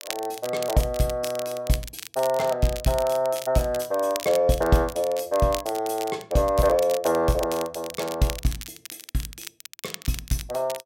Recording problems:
crackling; vinyl, SNR 13 dB

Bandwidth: 16 kHz